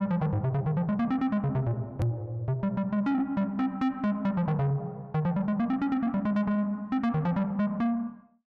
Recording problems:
distortion; soft clipping, signal-to-distortion ratio 11 dB
edit click; at 2 s

